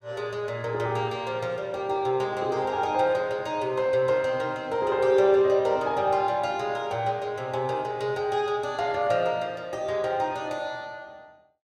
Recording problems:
none

